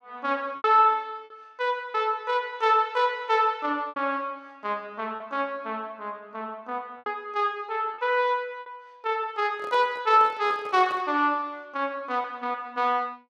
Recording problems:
packet loss; 4% of the sound replaced, filled with repeated pitch periods
handling noise; from 9.5 to 11 s; peak -10 dB vs average level

